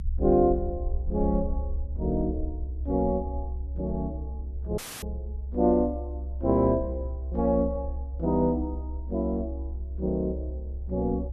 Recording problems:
low-frequency rumble; below 68 Hz, strongest tone 66 Hz, SNR 6 dB
audio cutting out; at 5 s

